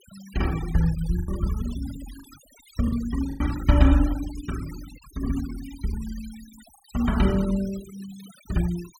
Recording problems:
denoising artefacts; signal-to-artefact ratio 18 dB
lost packets; 3% of the sound replaced, filled with the last packet

